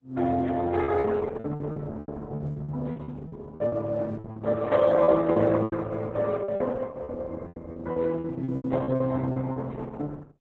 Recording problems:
codec artefacts; Opus, then Opus, log-spectral distance 3 dB
lost packets; 14% of the sound replaced, filled with repeated pitch periods

